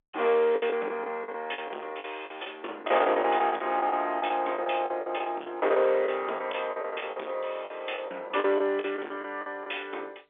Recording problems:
phone line; 300 Hz to 3.6 kHz, G.711
distorted audio; soft clipping, signal-to-distortion ratio 11 dB
lost packets; 14% of the sound replaced, filled with the last packet

